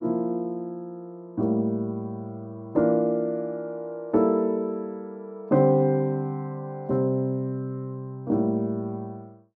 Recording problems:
none

